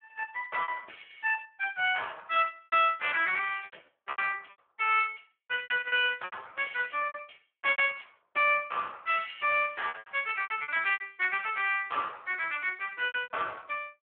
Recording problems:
phone line; 370 Hz to 3.4 kHz, Speex
lost packets; 11% of the sound replaced, filled with repeated pitch periods

